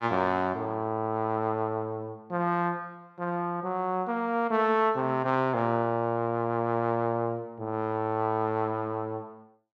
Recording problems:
none

